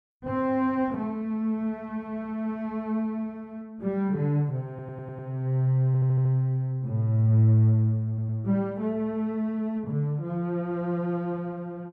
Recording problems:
audio stuttering; at 4.5 s, at 6 s and at 8 s

